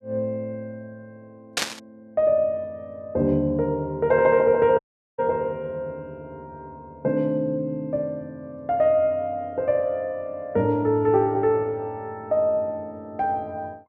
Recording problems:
static burst; at 1.5 s; peak +4 dB vs average level
audio cutting out; at 5 s

